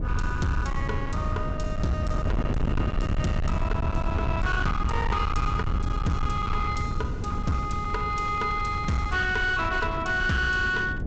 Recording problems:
treble missing; nothing above 8 kHz
distortion; hard clipping, signal-to-distortion ratio 7 dB
low-frequency rumble; below 110 Hz, SNR 3 dB
wind noise; below 270 Hz, SNR 7 dB

